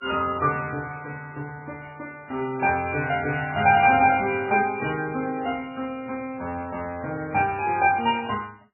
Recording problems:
lossy compression; MP3, log-spectral distance 4 dB, nothing above 2.4 kHz

